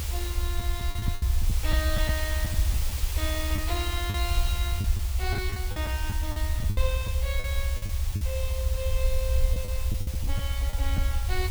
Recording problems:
background hiss; slope 0 dB per octave, SNR 3 dB
rumble; below 78 Hz, SNR -6 dB
packet loss; 9% of the sound replaced, filled with the last packet

